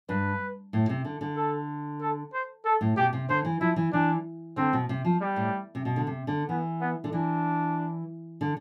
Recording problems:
none

